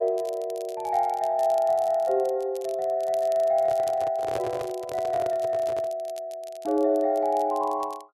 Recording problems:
crackle; vinyl, SNR 24 dB
handling noise; from 3.5 to 6 s; peak -3 dB vs average level

